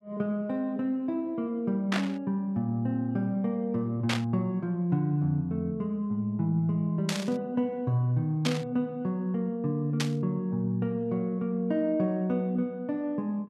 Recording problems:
static burst; 5 times, first at 2 s; peak +3 dB vs average level

